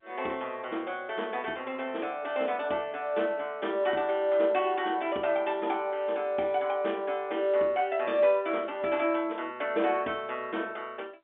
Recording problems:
phone line; 240 Hz to 4 kHz, G.711

